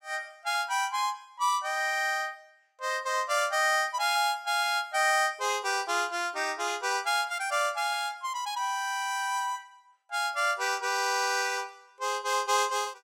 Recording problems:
none

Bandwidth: 16.5 kHz